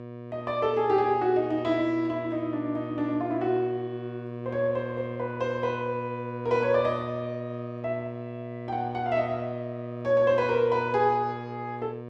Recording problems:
electrical hum; 60 Hz, harmonics up to 2.3 kHz, SNR 9 dB

